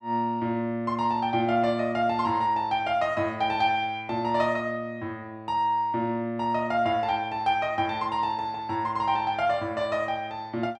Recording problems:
none

